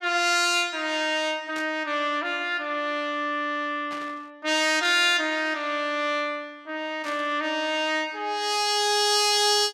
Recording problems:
static burst; at 1.5 s, at 4 s and at 7 s; peak -11 dB vs average level

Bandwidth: 15.5 kHz